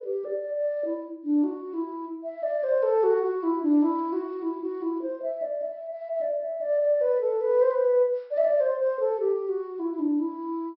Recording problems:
treble cut off; nothing above 5.5 kHz

